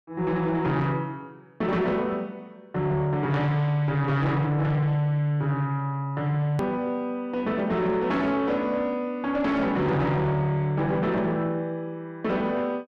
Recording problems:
distorted audio; soft clipping, signal-to-distortion ratio 11 dB
click at an edit; at 6.5 s

